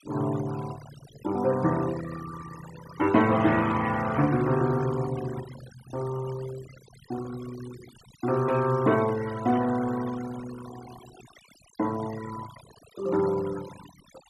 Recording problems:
denoising artefacts; signal-to-artefact ratio 17 dB

